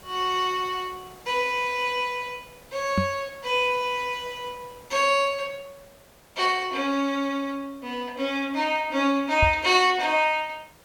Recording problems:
background hiss; slope -4 dB per octave, SNR 25 dB
microphone bump; at 3 s and at 9.5 s; peak +3 dB vs average level

